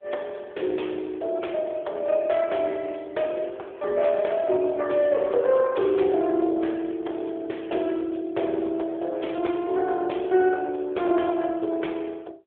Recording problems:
phone line; 300 Hz to 3.5 kHz, AMR-NB

